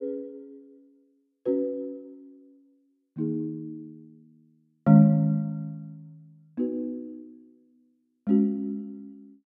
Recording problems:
none

